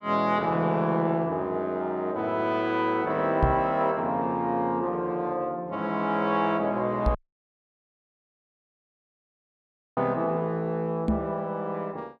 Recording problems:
microphone bump; at 3.5 s, at 7 s and at 11 s; peak +6 dB vs average level
dropout; at 7 s for 3 s

